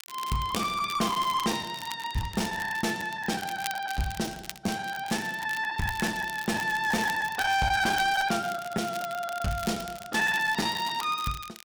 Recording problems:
distortion; hard clipping, uneven, signal-to-distortion ratio 11 dB
crackle; vinyl, SNR 14 dB
packet loss; 12% of the sound replaced, filled with the last packet

